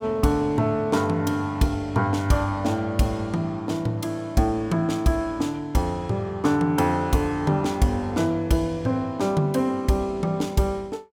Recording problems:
none

